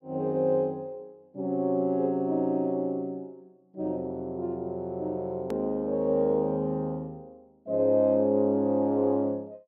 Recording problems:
edit click; at 5.5 s

